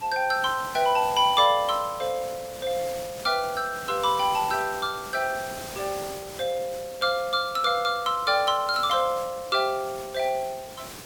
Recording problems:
background hiss; slope -2 dB per octave, SNR 15 dB

